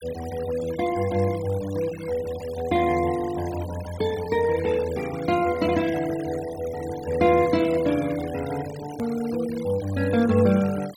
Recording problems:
denoising artefacts; signal-to-artefact ratio 17 dB
click at an edit; at 9 s

